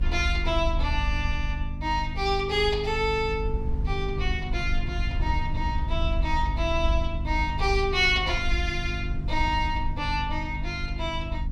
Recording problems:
electrical hum; 50 Hz, harmonics up to 300 Hz, SNR 9 dB
rumble; below 68 Hz, SNR 4 dB

